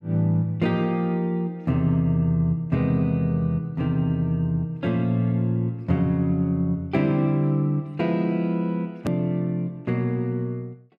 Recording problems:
edit click; at 9 s

